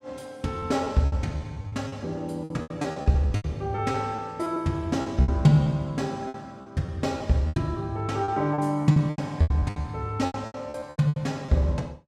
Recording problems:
packet loss; 16% of the sound replaced, filled with repeated pitch periods

